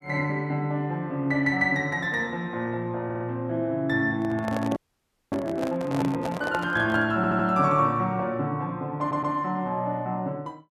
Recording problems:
stutter; at 3 s, at 7 s and at 9 s
handling noise; from 4 to 7 s; peak -2 dB vs average level
audio freezing; at 5 s for 0.5 s

